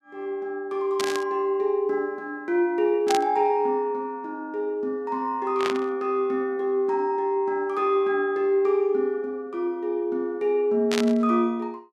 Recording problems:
burst of static; 4 times, first at 1 s; peak 0 dB vs average level

